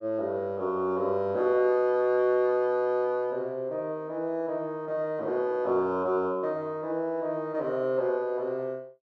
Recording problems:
none

